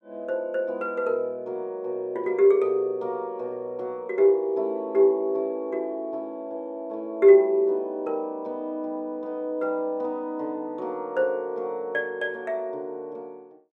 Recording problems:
none

